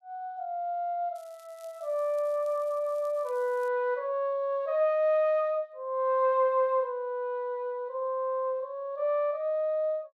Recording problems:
crackle; from 1 to 3.5 s; loose cable, SNR 30 dB

